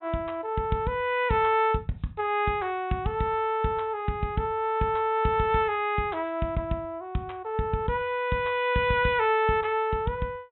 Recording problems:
treble cut off; nothing above 3.9 kHz

